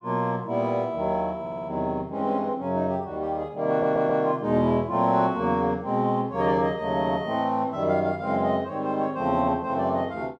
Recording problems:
audio stuttering; at 1.5 s and at 3.5 s

